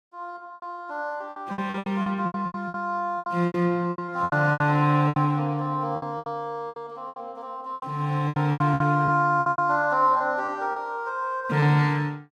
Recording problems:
lost packets; 16% of the sound replaced, filled with repeated pitch periods

